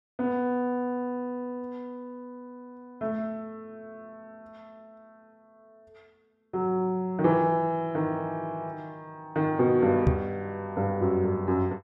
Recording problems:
microphone bump; at 10 s; peak +8 dB vs average level

